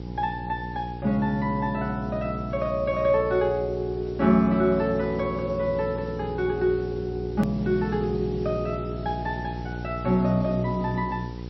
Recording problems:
codec artefacts; MP3, log-spectral distance 3 dB, nothing above 16.1 kHz
hum; 60 Hz, harmonics up to 900 Hz, SNR 9 dB
background hiss; slope 0 dB per octave, SNR 27 dB
hard cut with a click; at 7.5 s

